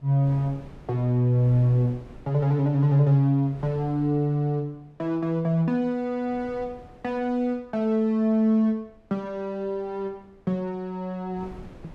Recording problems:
wind on the microphone; below 370 Hz, SNR 24 dB

